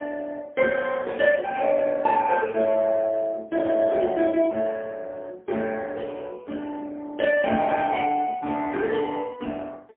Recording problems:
telephone audio; 260 Hz to 2.3 kHz, AMR-NB, then MP3

